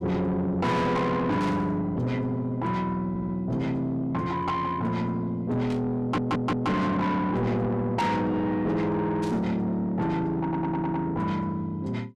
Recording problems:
distorted audio; soft clipping, signal-to-distortion ratio 7 dB
static burst; at 1.5 s, at 5.5 s and at 9 s; peak -11 dB vs average level
audio stuttering; at 3 s, at 6 s and at 10 s

